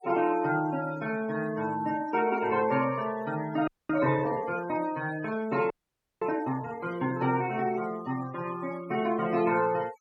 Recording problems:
denoising artefacts; signal-to-artefact ratio 18 dB
audio freezing; at 3.5 s and at 5.5 s for 0.5 s

